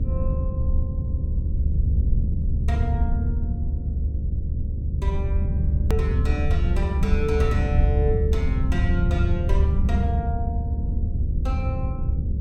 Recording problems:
electrical hum; 50 Hz, harmonics up to 550 Hz, SNR 4 dB
low-frequency rumble; below 88 Hz, SNR -7 dB
click at an edit; at 6 s

